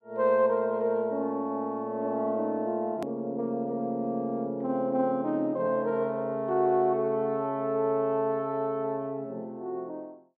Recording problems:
click at an edit; at 3 s

